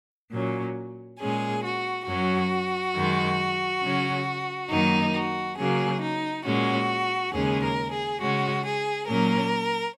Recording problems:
none

